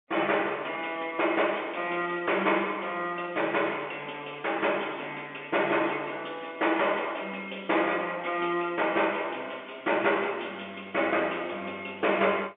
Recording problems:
phone line; 280 Hz to 3.5 kHz, G.711

